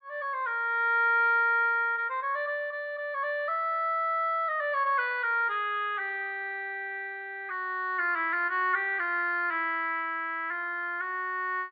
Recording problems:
low-pass filter; nothing above 4.9 kHz

